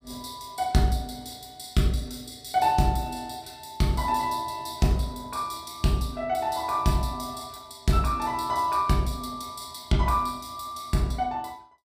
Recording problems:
none

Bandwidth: 15 kHz